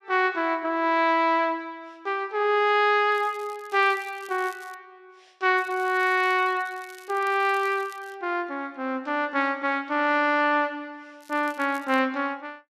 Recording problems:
crackling; from 3 to 5 s, from 5.5 to 8 s and at 11 s; loose cable, SNR 26 dB

